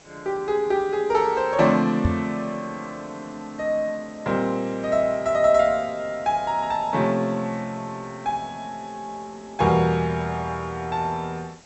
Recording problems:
treble missing; nothing above 8 kHz
background hiss; slope -3 dB per octave, SNR 25 dB
microphone bump; at 2 s; peak +5 dB vs average level

